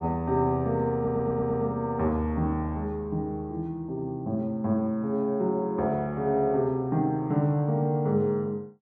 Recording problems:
stutter; at 1 s

